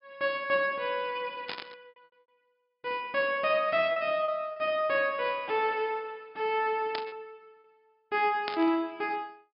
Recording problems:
low-pass filter; nothing above 5.5 kHz
packet loss; 2% of the sound replaced, filled with repeated pitch periods
burst of static; at 1.5 s, at 7 s and at 8.5 s; peak -2 dB vs average level

